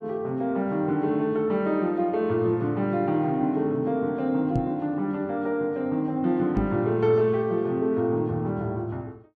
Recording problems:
knock on the microphone; at 4.5 s and at 6.5 s; peak +2 dB vs average level

